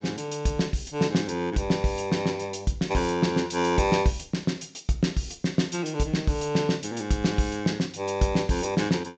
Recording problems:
low-pass filter; nothing above 8 kHz

